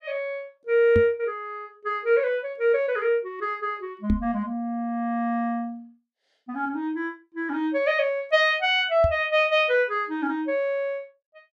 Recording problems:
microphone thump; at 1 s, at 4 s and at 9 s; peak +2 dB vs average level

